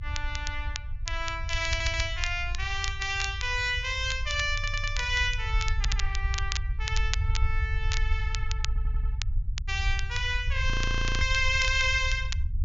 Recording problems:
low-pass filter; nothing above 7.2 kHz
rumble; below 72 Hz, SNR 3 dB
crackle; vinyl, SNR 9 dB
audio stuttering; 4 times, first at 1.5 s
frozen audio; at 11 s for 0.5 s

